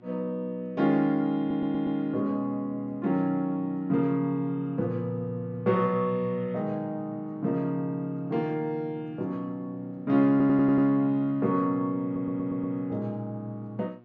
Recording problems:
treble missing; nothing above 7.9 kHz
mains hum; 60 Hz, harmonics up to 1.6 kHz, SNR 27 dB
audio stuttering; at 1.5 s, at 10 s and at 12 s

